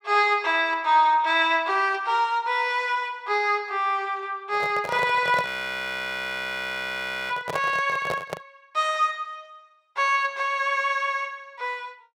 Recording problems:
microphone handling noise; from 4.5 to 8.5 s; peak -1 dB vs average level
audio freezing; at 5.5 s for 2 s

